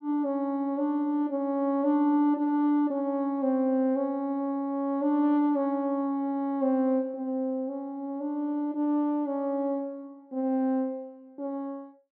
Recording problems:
none

